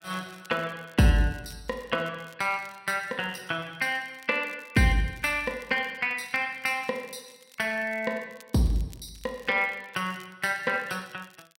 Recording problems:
crackling; vinyl, SNR 27 dB

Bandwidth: 16 kHz